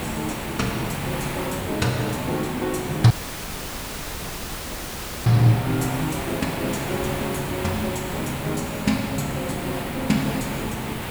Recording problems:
background hiss; SNR 5 dB
audio cutting out; at 3 s for 2 s

